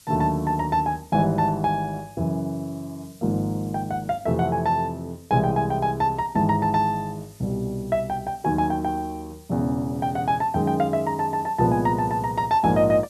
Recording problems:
background hiss; SNR 27 dB

